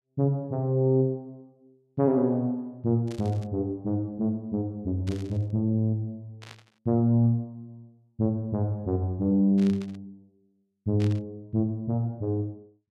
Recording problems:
static burst; 5 times, first at 3 s; peak -12 dB vs average level

